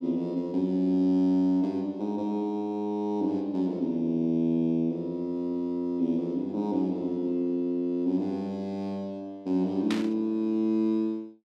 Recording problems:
static burst; at 10 s; peak -2 dB vs average level

